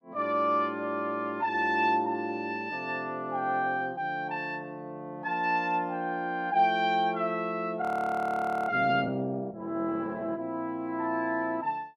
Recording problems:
frozen audio; at 8 s for 1 s

